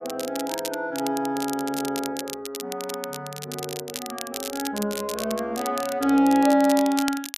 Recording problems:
crackling; vinyl, SNR 10 dB

